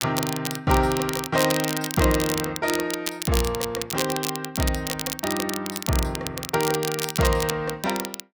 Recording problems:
crackling; vinyl, SNR 5 dB

